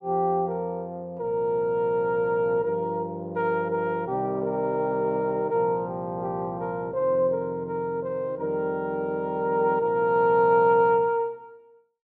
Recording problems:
none

